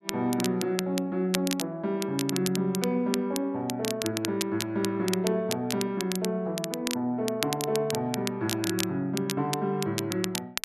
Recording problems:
crackling; vinyl, SNR 6 dB

